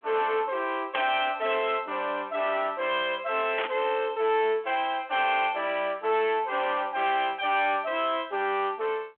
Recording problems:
phone line; 220 Hz to 3.5 kHz, G.726
distorted audio; soft clipping, signal-to-distortion ratio 11 dB
static burst; at 1 s and at 3.5 s; peak -1 dB vs average level

